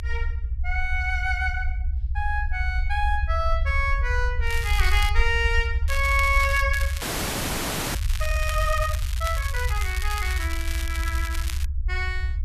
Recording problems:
rumble; below 70 Hz, SNR 1 dB
crackle; at 4.5 s, at 6 s and from 6.5 to 12 s; loose cable, SNR 9 dB
audio freezing; at 7 s for 1 s

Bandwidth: 14 kHz